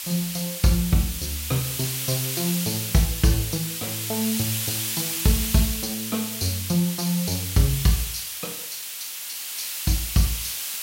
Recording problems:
hiss; slope +4 dB per octave, SNR 2 dB

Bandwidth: 16 kHz